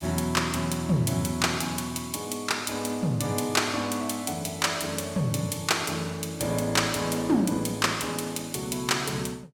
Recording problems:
none

